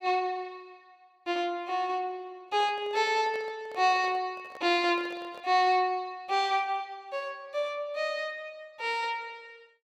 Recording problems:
microphone handling noise; from 2.5 to 5.5 s; peak -11 dB vs average level

